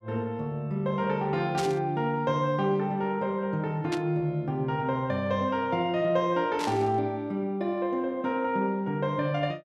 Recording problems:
burst of static; at 1.5 s, at 4 s and at 6.5 s; peak -3 dB vs average level

